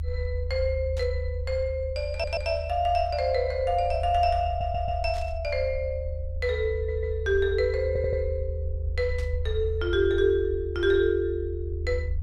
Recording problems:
low-frequency rumble; below 78 Hz, strongest tone 78 Hz, SNR 6 dB
burst of static; at 1 s, at 5 s and at 9 s; peak -13 dB vs average level
stutter; 4 times, first at 2 s

